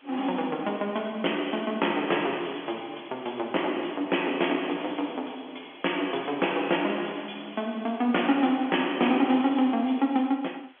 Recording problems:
phone line; 220 Hz to 3.4 kHz, G.711
hiss; SNR 28 dB

